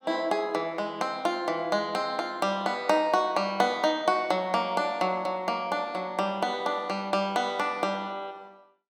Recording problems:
none

